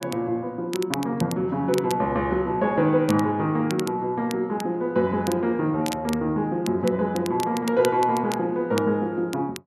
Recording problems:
crackle; vinyl, SNR 15 dB

